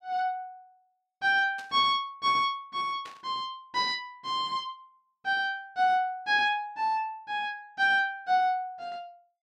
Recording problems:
static burst; at 1.5 s and at 3 s; peak -14 dB vs average level

